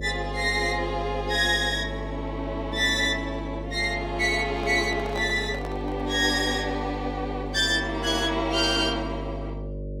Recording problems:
hum; 50 Hz, harmonics up to 600 Hz, SNR 10 dB
microphone handling noise; from 4.5 to 6 s; peak -7 dB vs average level

